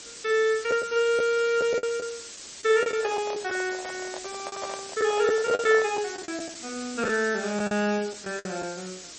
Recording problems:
lossy codec; MP3, log-spectral distance 16 dB, nothing above 8 kHz
hiss; SNR 13 dB
lost packets; 7% of the sound replaced, filled with the last packet
microphone handling noise; from 3 to 6 s; peak -3 dB vs average level

